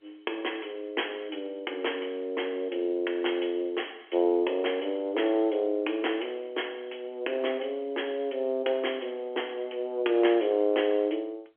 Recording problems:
phone line; 280 Hz to 3.3 kHz, G.711

